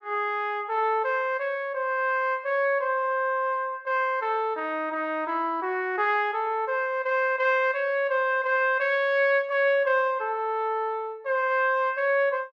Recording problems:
none

